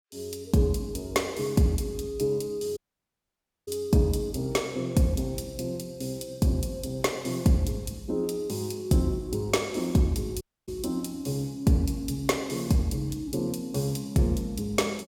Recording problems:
dropout; at 3 s for 1 s and at 10 s

